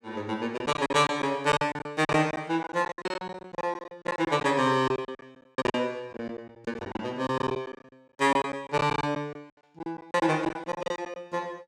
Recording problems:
packet loss; 17% of the sound replaced, filled with silence

